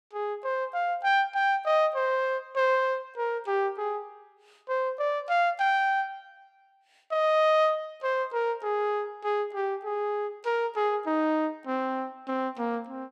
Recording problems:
none

